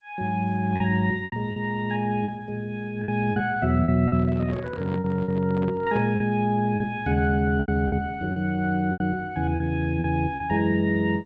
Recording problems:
lossy codec; G.722, then Opus, log-spectral distance 2 dB
lost packets; 8% of the sound replaced, filled with repeated pitch periods
handling noise; from 4 to 6 s; peak -7 dB vs average level

